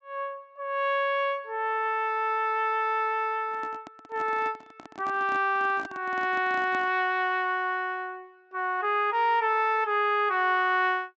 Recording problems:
low-pass filter; nothing above 8 kHz
microphone handling noise; from 3.5 to 7 s; peak -9 dB vs average level

